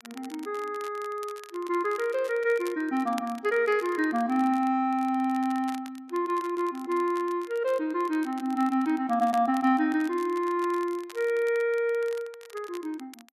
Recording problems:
crackling; vinyl, SNR 22 dB

